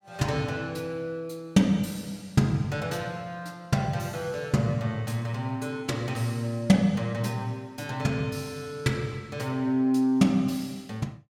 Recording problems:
none

